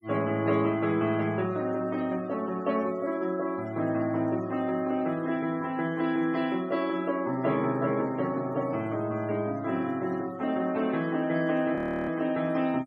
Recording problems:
noise reduction artefacts; signal-to-artefact ratio 21 dB
frozen audio; at 12 s

